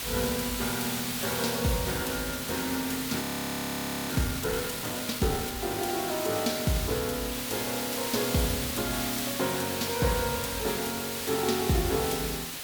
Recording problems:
background hiss; slope 0 dB per octave, SNR 2 dB
frozen audio; at 3 s for 1 s

